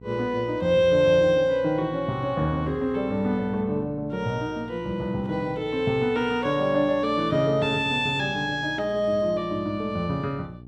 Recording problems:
hum; 60 Hz, harmonics up to 480 Hz, SNR 20 dB

